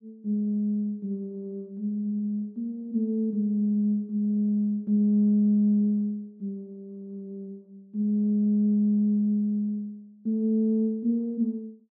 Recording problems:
none

